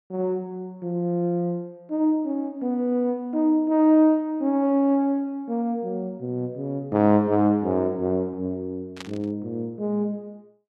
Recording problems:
static burst; at 9 s; peak -9 dB vs average level

